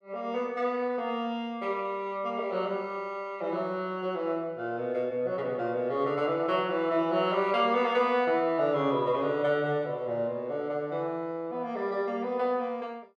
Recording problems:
none

